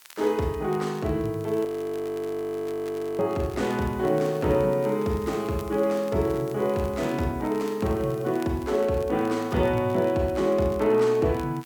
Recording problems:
hiss; slope +2 dB per octave, SNR 27 dB
crackle; vinyl, SNR 25 dB
audio freezing; at 1.5 s for 1.5 s

